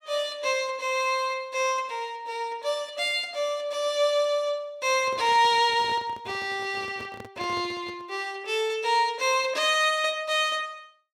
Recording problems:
microphone handling noise; from 5 to 8 s; peak -11 dB vs average level

